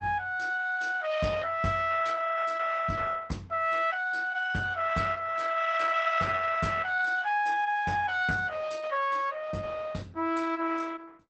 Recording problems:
lossy compression; Opus, log-spectral distance 4 dB, nothing above 8 kHz

